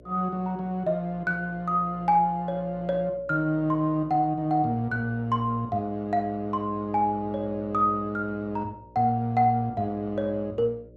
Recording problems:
electrical hum; 60 Hz, harmonics up to 600 Hz, SNR 23 dB

